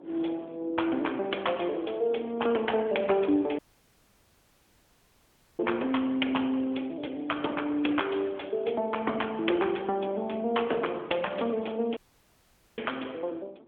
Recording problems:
phone line; 240 Hz to 3.4 kHz, AMR-NB
wind noise; below 460 Hz, SNR 20 dB
dropout; at 3.5 s for 2 s and at 12 s for 1 s

